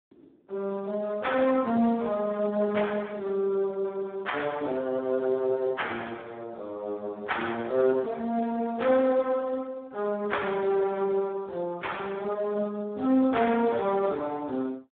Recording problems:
telephone audio; 220 Hz to 3.6 kHz, Speex

